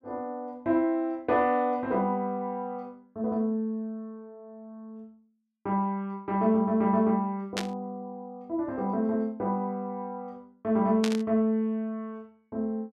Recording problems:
static burst; at 7.5 s and at 11 s; peak +1 dB vs average level

